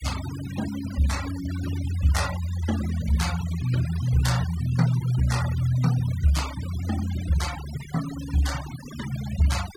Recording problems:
noise reduction artefacts; signal-to-artefact ratio 13 dB

